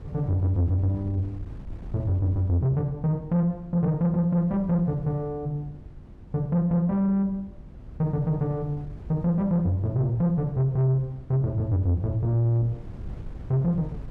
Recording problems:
distortion; soft clipping, signal-to-distortion ratio 10 dB
hum; 50 Hz, harmonics up to 350 Hz, SNR 25 dB
wind noise; below 130 Hz, SNR 18 dB

